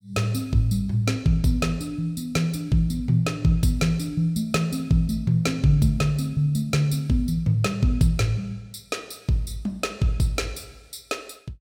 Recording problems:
none

